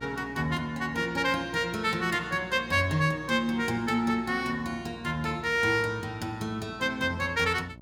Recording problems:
hum; 60 Hz, harmonics up to 960 Hz, SNR 20 dB

